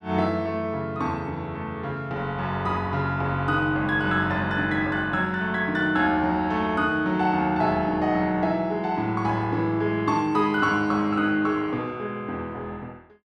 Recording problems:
none

